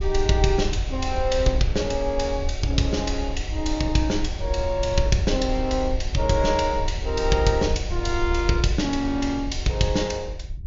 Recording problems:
treble missing; nothing above 7.1 kHz
low-frequency rumble; below 68 Hz, SNR 7 dB

